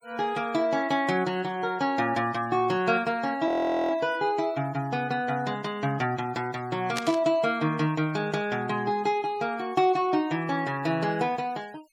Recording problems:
noise reduction artefacts; signal-to-artefact ratio 25 dB
frozen audio; at 3.5 s
burst of static; at 7 s; peak 0 dB vs average level

